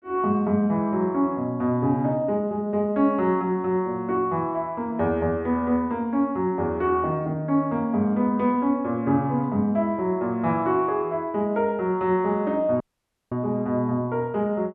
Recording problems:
audio cutting out; at 13 s for 0.5 s

